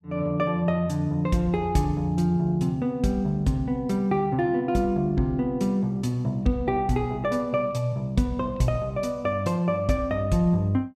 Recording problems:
none

